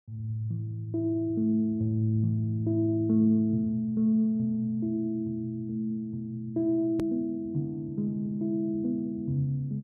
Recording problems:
edit click; at 7 s

